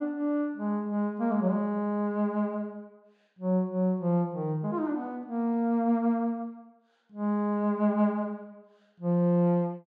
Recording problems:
none

